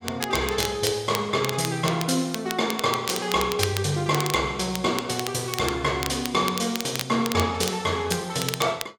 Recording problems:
crackling; vinyl, SNR 8 dB

